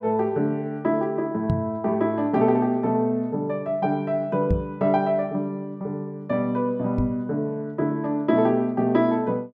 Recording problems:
knock on the microphone; at 1.5 s, at 4.5 s and at 7 s; peak +5 dB vs average level

